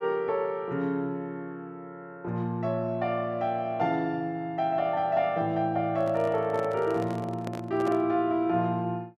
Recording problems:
handling noise; from 6 to 8 s; peak -5 dB vs average level

